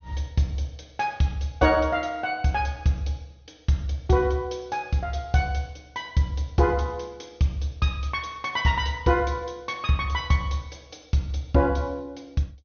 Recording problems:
treble missing; nothing above 6.4 kHz

